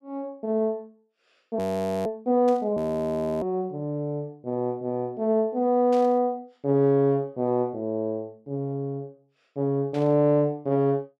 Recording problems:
audio freezing; at 1.5 s and at 3 s for 0.5 s
static burst; at 2.5 s, at 6 s and at 10 s; peak -14 dB vs average level

